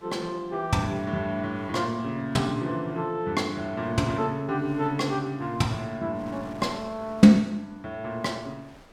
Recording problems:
wind noise; below 1.9 kHz, SNR 26 dB

